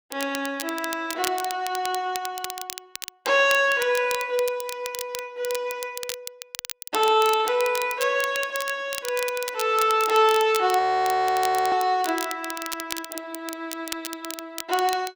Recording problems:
crackle; vinyl, SNR 11 dB
frozen audio; at 11 s for 1 s

